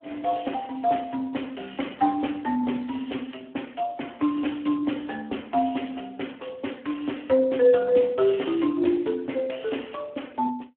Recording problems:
telephone audio; 240 Hz to 3.3 kHz, Speex

